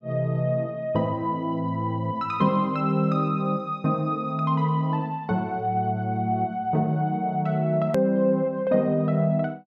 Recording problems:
edit click; at 8 s

